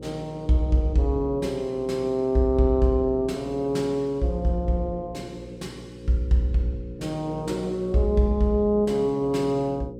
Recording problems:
electrical hum; 60 Hz, harmonics up to 540 Hz, SNR 15 dB

